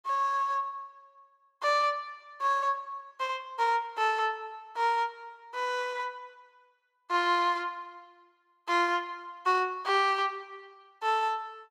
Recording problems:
none

